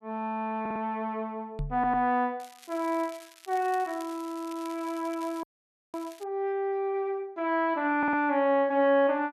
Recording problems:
stutter; at 0.5 s, at 1.5 s and at 8 s
knock on the microphone; at 1.5 s; peak -2 dB vs average level
crackling; from 2.5 to 6.5 s; loose cable, SNR 22 dB
audio freezing; at 5.5 s for 0.5 s

